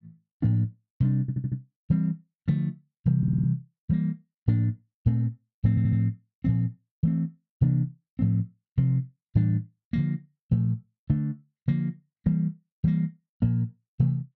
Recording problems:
stutter; at 1 s, at 3 s and at 5.5 s

